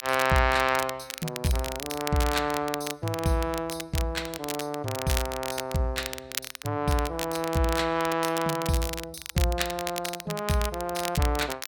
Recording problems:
crackle; vinyl, SNR 8 dB

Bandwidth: 17 kHz